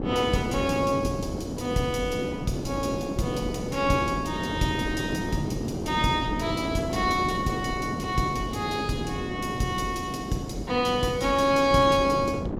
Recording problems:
wind noise; below 420 Hz, SNR 5 dB

